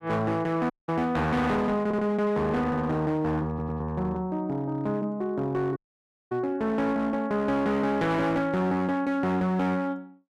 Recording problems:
distortion; hard clipping, uneven, signal-to-distortion ratio 10 dB
dropout; at 0.5 s and at 6 s for 0.5 s
audio stuttering; at 2 s and at 3.5 s

